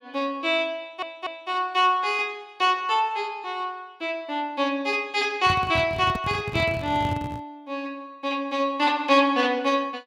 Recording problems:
stutter; at 1 s
microphone handling noise; from 5.5 to 7.5 s; peak -1 dB vs average level

